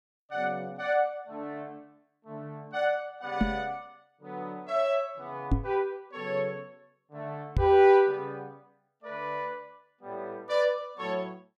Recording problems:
microphone thump; at 3.5 s, at 5.5 s and at 7.5 s; peak +7 dB vs average level

